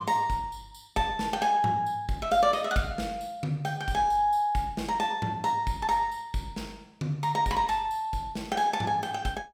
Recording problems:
none

